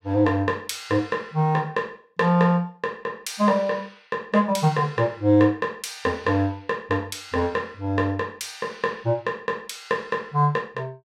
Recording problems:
none

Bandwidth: 16.5 kHz